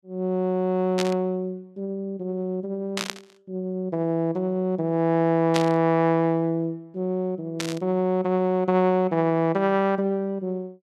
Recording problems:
static burst; 4 times, first at 1 s; peak +1 dB vs average level

